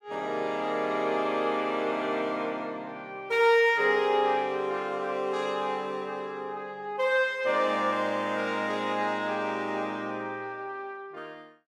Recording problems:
none

